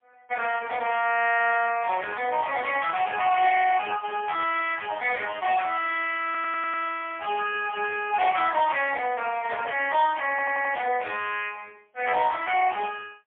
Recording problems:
phone line; 370 Hz to 3 kHz, AMR-NB, then MP3
audio stuttering; at 6.5 s and at 10 s

